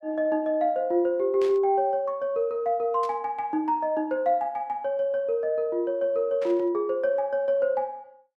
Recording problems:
static burst; at 1.5 s, at 3 s and at 6.5 s; peak -13 dB vs average level

